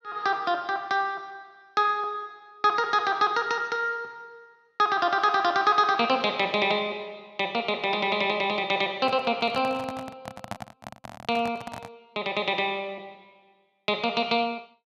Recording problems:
microphone handling noise; from 9 to 12 s; peak -4 dB vs average level

